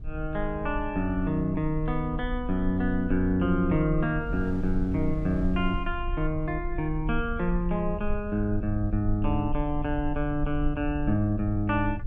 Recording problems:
rumble; below 52 Hz, strongest tone 18 Hz, SNR 8 dB
wind noise; below 180 Hz, SNR 18 dB

